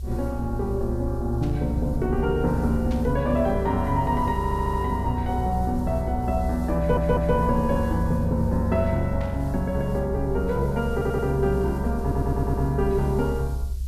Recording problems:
background hiss; slope +4 dB per octave, SNR 27 dB
rumble; below 66 Hz, strongest tone 64 Hz, SNR 6 dB
burst of static; at 1.5 s, at 3 s and at 9 s; peak -13 dB vs average level
stutter; 4 times, first at 4.5 s

